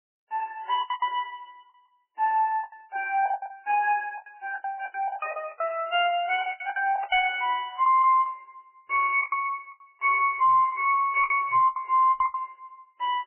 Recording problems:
lossy codec; MP3, log-spectral distance 3 dB, nothing above 3 kHz
distorted audio; hard clipping, uneven, signal-to-distortion ratio 9 dB
lost packets; 15% of the sound replaced, filled with the last packet

